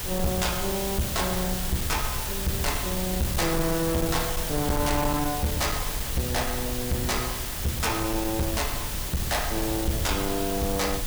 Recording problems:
distorted audio; hard clipping, signal-to-distortion ratio 11 dB
background hiss; slope -1 dB per octave, SNR 3 dB
rumble; below 84 Hz, SNR 8 dB

